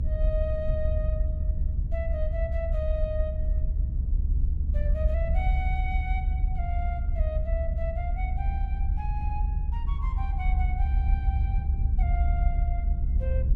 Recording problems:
low-frequency rumble; below 68 Hz, SNR -9 dB

